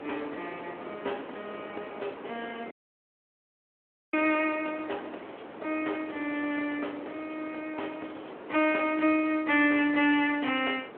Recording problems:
telephone audio; 260 Hz to 3.4 kHz, Speex
wind on the microphone; below 990 Hz, SNR 14 dB
dropout; at 2.5 s for 1.5 s

